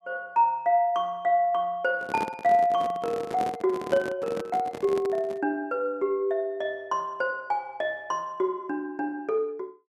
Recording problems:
microphone handling noise; from 2 to 5.5 s; peak -2 dB vs average level

